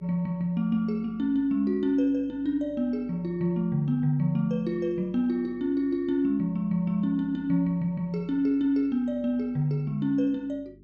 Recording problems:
hum; 50 Hz, harmonics up to 400 Hz, SNR 26 dB

